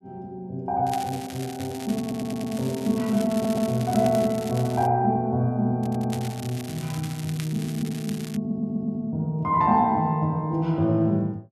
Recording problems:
crackling; from 1 to 5 s and from 6 to 8.5 s; loose cable, SNR 16 dB
stutter; 4 times, first at 2 s

